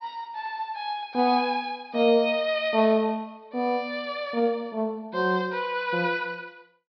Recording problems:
treble cut off; nothing above 5.5 kHz

